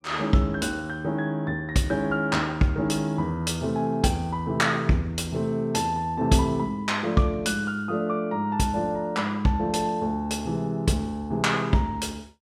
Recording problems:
none

